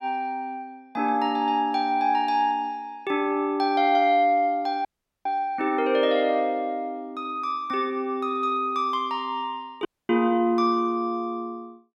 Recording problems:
audio cutting out; at 5 s and at 10 s

